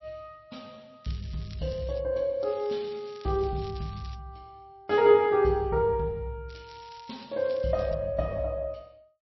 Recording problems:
lossy compression; MP3, log-spectral distance 4 dB, nothing above 4.8 kHz
crackling; at 1 s, from 2.5 to 4 s and from 6.5 to 8 s; loose cable, SNR 24 dB

